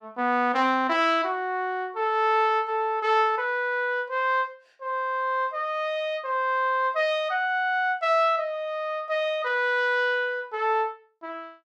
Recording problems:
none

